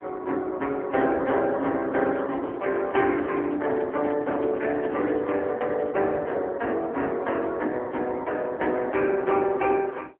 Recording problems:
phone line; 220 Hz to 3.4 kHz, AMR-NB
handling noise; from 2 to 6 s; peak -8 dB vs average level

